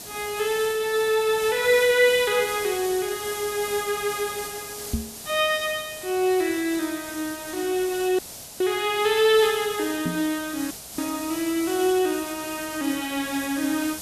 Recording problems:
hiss; SNR 11 dB
knock on the microphone; at 5 s and at 10 s; peak +1 dB vs average level
dropout; at 8 s and at 11 s

